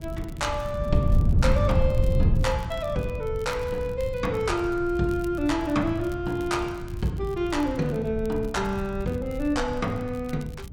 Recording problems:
wind noise; below 120 Hz, SNR 3 dB
crackling; vinyl, SNR 25 dB

